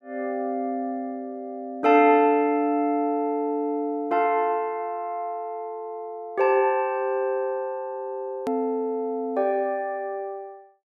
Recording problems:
hard cut with a click; at 8.5 s

